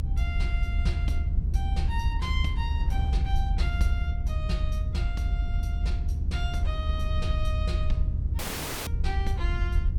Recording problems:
rumble; below 76 Hz, SNR -9 dB
wind noise; below 290 Hz, SNR 16 dB
audio cutting out; at 8.5 s

